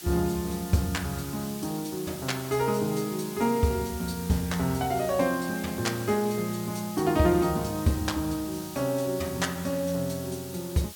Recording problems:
background hiss; slope +1 dB per octave, SNR 12 dB

